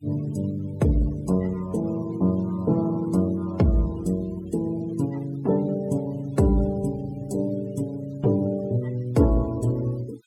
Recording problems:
noise reduction artefacts; signal-to-artefact ratio 23 dB

